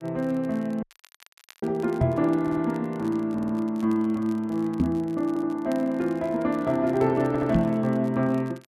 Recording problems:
crackle; vinyl, SNR 28 dB
audio cutting out; at 1 s for 1 s
knock on the microphone; at 2 s, at 5 s and at 7.5 s; peak +6 dB vs average level
audio stuttering; 4 times, first at 2.5 s

